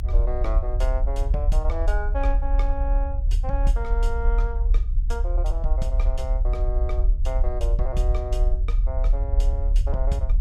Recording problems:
low-frequency rumble; below 56 Hz, strongest tone 38 Hz, SNR -8 dB

